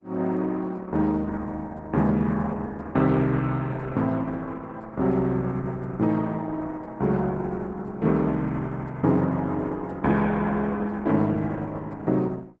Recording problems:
lossy codec; Opus, log-spectral distance 3 dB, nothing above 7.3 kHz

